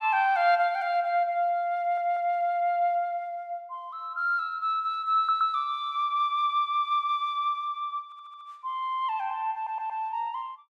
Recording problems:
audio stuttering; 4 times, first at 2 s

